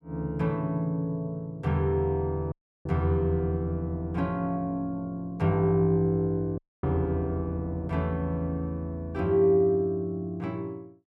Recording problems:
audio cutting out; at 2.5 s and at 6.5 s

